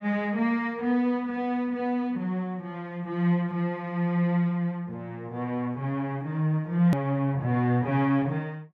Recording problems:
edit click; at 7 s

